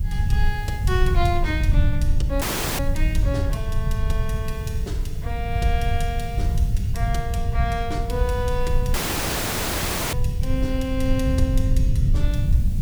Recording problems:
background hiss; SNR 18 dB
low-frequency rumble; below 92 Hz, SNR -5 dB
dropout; at 2.5 s and at 9 s for 1 s

